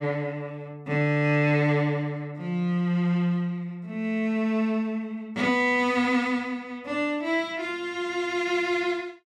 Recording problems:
none

